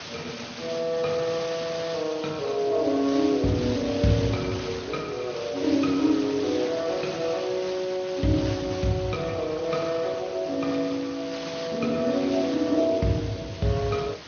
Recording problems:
low-pass filter; nothing above 6.3 kHz
lossy compression; Speex, log-spectral distance 14 dB
hiss; slope -1 dB per octave, SNR 12 dB

